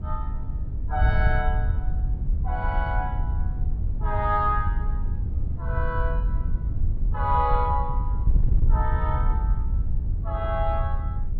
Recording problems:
mains hum; 50 Hz, harmonics up to 300 Hz, SNR 16 dB
wind noise; below 76 Hz, SNR -2 dB

